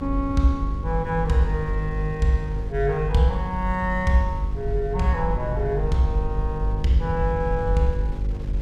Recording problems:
hum; 50 Hz, harmonics up to 550 Hz, SNR 8 dB
low-frequency rumble; below 56 Hz, strongest tone 46 Hz, SNR 6 dB
wind on the microphone; below 330 Hz, SNR 21 dB

